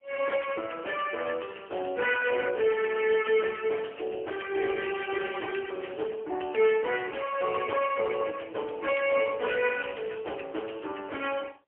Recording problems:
telephone audio; 320 Hz to 3.2 kHz, AMR-NB, then MP3

